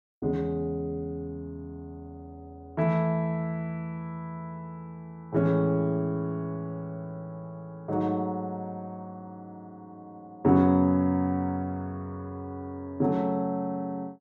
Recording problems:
none

